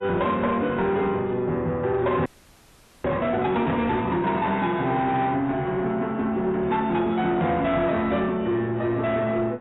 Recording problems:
lossy compression; AAC, log-spectral distance 2 dB, nothing above 3.8 kHz
distorted audio; soft clipping, signal-to-distortion ratio 10 dB
audio freezing; at 2.5 s for 1 s

